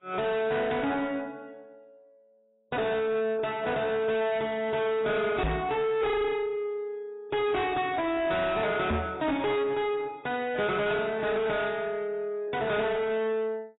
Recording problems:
lossy codec; AAC, log-spectral distance 3 dB, nothing above 3.8 kHz
distorted audio; soft clipping, signal-to-distortion ratio 7 dB
microphone thump; at 5.5 s and at 9 s; peak +3 dB vs average level

